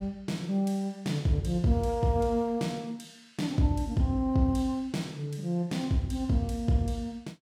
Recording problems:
none

